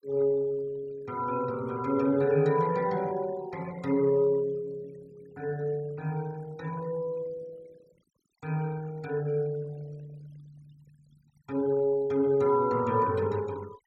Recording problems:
denoising artefacts; signal-to-artefact ratio 24 dB

